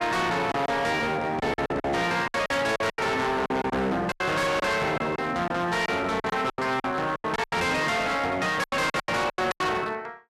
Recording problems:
distortion; hard clipping, uneven, signal-to-distortion ratio 7 dB
packet loss; 14% of the sound replaced, filled with silence

